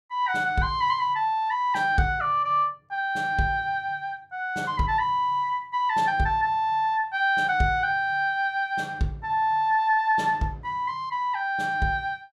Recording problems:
none

